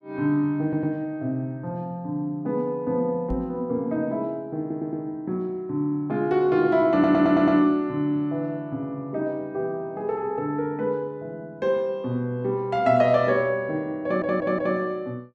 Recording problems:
audio stuttering; 4 times, first at 0.5 s
microphone thump; at 3.5 s; peak -5 dB vs average level

